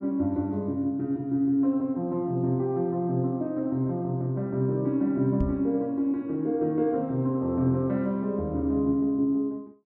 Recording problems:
microphone thump; at 5.5 s; peak +1 dB vs average level

